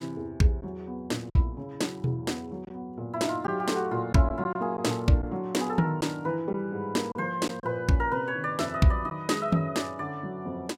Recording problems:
lost packets; 3% of the sound replaced, filled with silence

